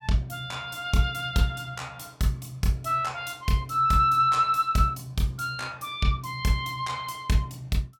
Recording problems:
none

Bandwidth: 17 kHz